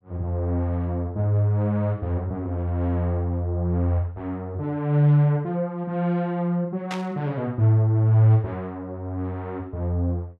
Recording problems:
static burst; at 7 s; peak -5 dB vs average level

